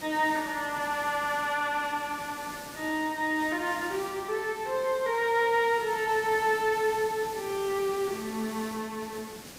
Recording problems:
hiss; SNR 14 dB

